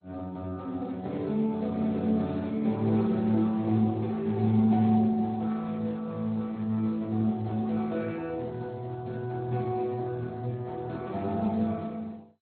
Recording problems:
lossy compression; Speex, then MP2, log-spectral distance 2 dB, nothing above 3.8 kHz

